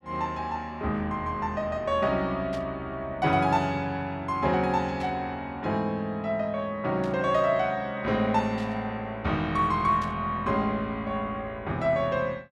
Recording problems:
static burst; 5 times, first at 2.5 s; peak -11 dB vs average level

